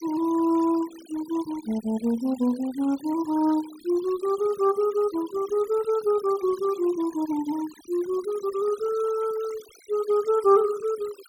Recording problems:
denoising artefacts; signal-to-artefact ratio 21 dB

